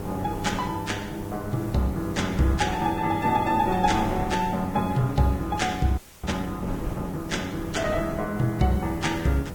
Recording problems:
codec artefacts; Vorbis, log-spectral distance 3 dB
hum; 50 Hz, harmonics up to 1.5 kHz, SNR 12 dB
hiss; SNR 23 dB
wind noise; below 400 Hz, SNR 11 dB
frozen audio; at 6 s

